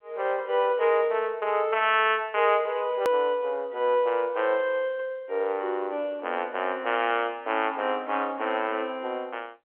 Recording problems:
phone line; 300 Hz to 3.3 kHz, G.711
click at an edit; at 3 s

